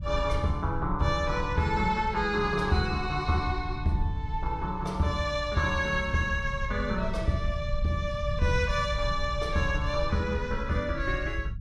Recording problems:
low-frequency rumble; below 82 Hz, SNR 7 dB

